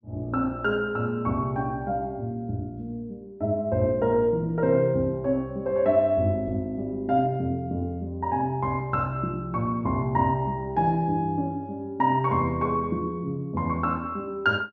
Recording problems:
treble cut off; nothing above 8 kHz

